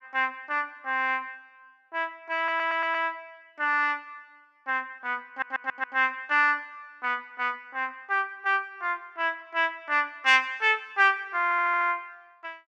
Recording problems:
audio stuttering; at 2.5 s, at 5.5 s and at 11 s

